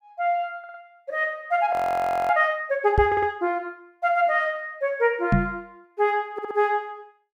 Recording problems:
stutter; at 0.5 s, at 3 s and at 6.5 s
audio freezing; at 1.5 s for 0.5 s
knock on the microphone; at 3 s and at 5.5 s; peak +6 dB vs average level

